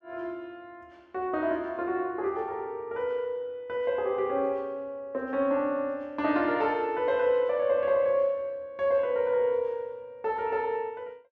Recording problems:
none

